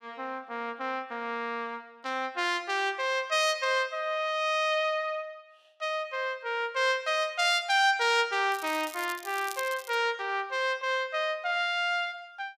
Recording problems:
crackle; from 8.5 to 10 s; loose cable, SNR 15 dB

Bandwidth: 15 kHz